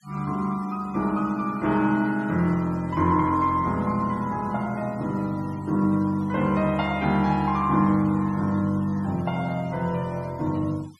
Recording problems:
denoising artefacts; signal-to-artefact ratio 25 dB

